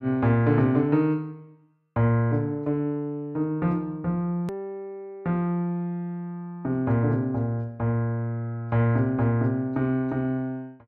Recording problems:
edit click; at 4.5 s

